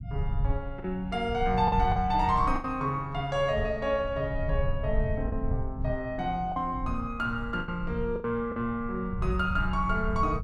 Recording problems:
rumble; below 92 Hz, SNR 6 dB
lost packets; 5% of the sound replaced, filled with the last packet

